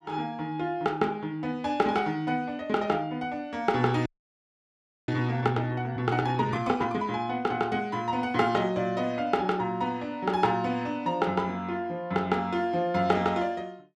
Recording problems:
frozen audio; at 4 s for 1 s

